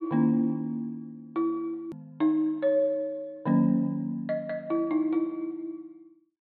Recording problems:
treble cut off; nothing above 4.3 kHz
hard cut with a click; at 2 s

